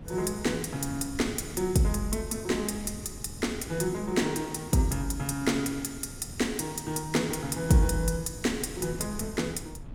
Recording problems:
wind noise; below 190 Hz, SNR 15 dB

